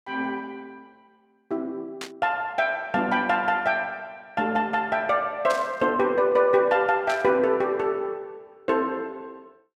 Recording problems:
burst of static; at 2 s, at 5.5 s and at 7 s; peak -6 dB vs average level

